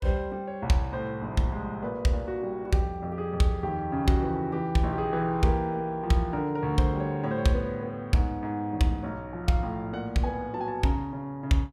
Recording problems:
none

